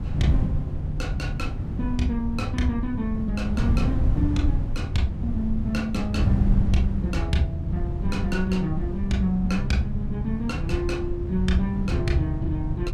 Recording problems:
wind on the microphone; below 120 Hz, SNR 1 dB

